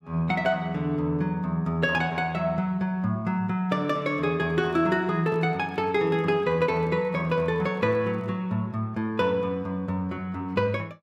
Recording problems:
handling noise; from 4.5 to 8.5 s; peak -12 dB vs average level

